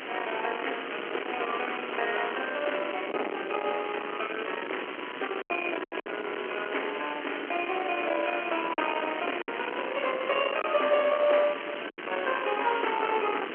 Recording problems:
telephone audio; 300 Hz to 3.1 kHz, G.711
distortion; soft clipping, signal-to-distortion ratio 11 dB
hiss; SNR 8 dB
wind noise; below 1.6 kHz, SNR 9 dB
lost packets; 3% of the sound replaced, filled with silence

